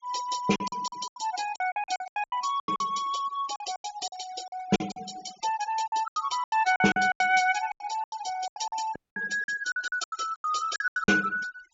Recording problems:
treble cut off; nothing above 7.4 kHz
noise reduction artefacts; signal-to-artefact ratio 15 dB
lost packets; 18% of the sound replaced, filled with silence
dropout; at 9 s

